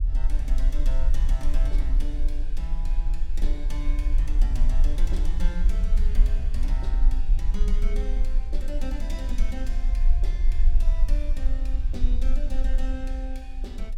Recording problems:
hum; 50 Hz, harmonics up to 550 Hz, SNR 26 dB
rumble; below 40 Hz, strongest tone 22 Hz, SNR -12 dB

